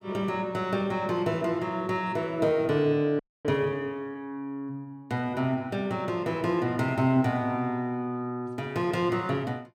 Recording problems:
audio freezing; at 3 s

